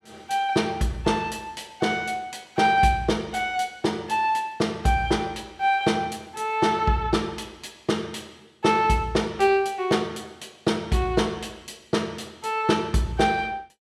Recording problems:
none

